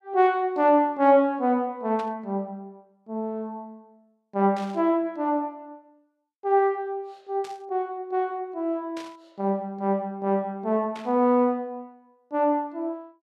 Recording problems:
static burst; 5 times, first at 2 s; peak -13 dB vs average level

